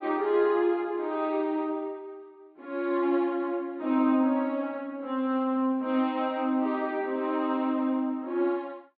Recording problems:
treble cut off; nothing above 4.9 kHz

